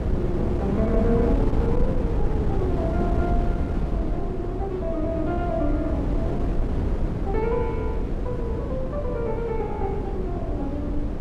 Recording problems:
wind noise; below 240 Hz, SNR -3 dB

